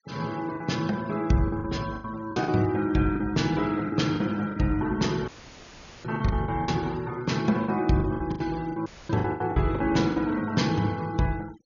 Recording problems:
treble cut off; nothing above 6.9 kHz
denoising artefacts; signal-to-artefact ratio 22 dB
packet loss; 11% of the sound replaced, filled with the last packet
dropout; at 5.5 s for 1 s and at 9 s; filled with static

